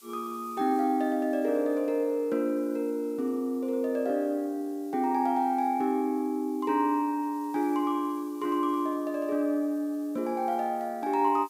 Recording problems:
background hiss; SNR 27 dB

